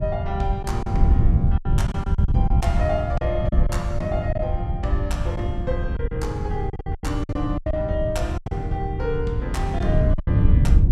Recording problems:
wind noise; below 110 Hz, SNR -4 dB
lost packets; 10% of the sound replaced, filled with silence

